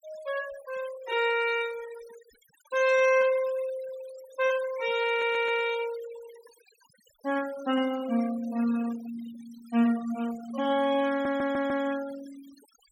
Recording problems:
noise reduction artefacts; signal-to-artefact ratio 17 dB
stutter; at 5 s and at 11 s

